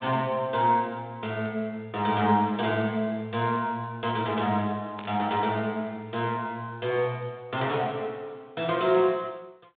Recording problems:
phone line; 150 Hz to 3.8 kHz, G.726
burst of static; at 5 s; peak -8 dB vs average level

